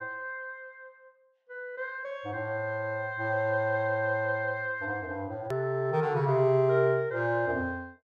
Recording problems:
click at an edit; at 5.5 s

